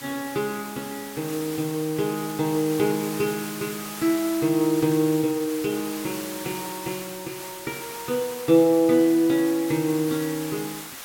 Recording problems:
background hiss; SNR 11 dB

